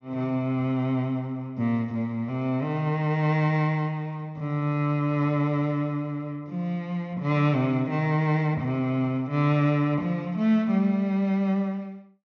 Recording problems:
treble cut off; nothing above 6.6 kHz

